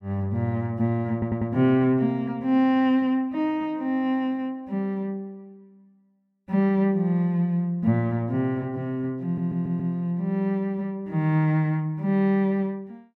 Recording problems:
audio stuttering; at 1 s and at 9 s

